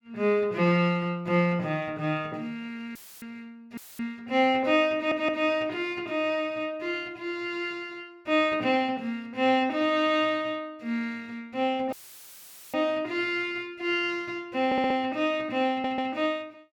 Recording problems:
dropout; at 3 s, at 4 s and at 12 s for 1 s; filled with static
audio stuttering; at 5 s, at 15 s and at 16 s

